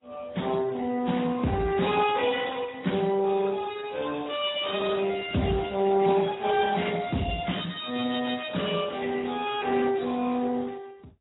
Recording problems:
lossy compression; Speex, then AAC, log-spectral distance 6 dB, nothing above 3.4 kHz

